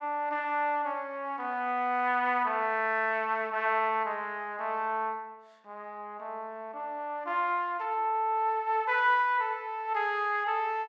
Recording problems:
none

